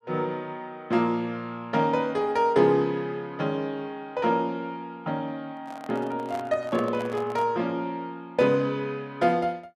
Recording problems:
microphone handling noise; from 5.5 to 7.5 s; peak -6 dB vs average level

